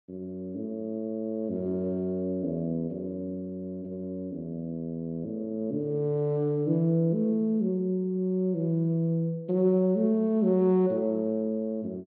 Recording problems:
treble missing; nothing above 4.5 kHz

